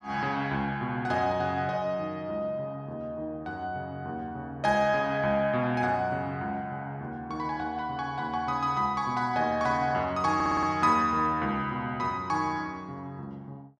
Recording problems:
audio stuttering; at 10 s

